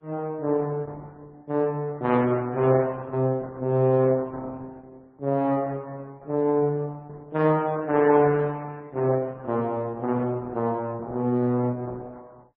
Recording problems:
lossy compression; Opus, then MP3, log-spectral distance 2 dB

